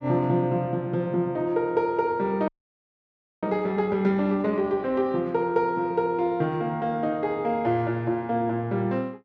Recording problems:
audio freezing; at 2.5 s for 1 s

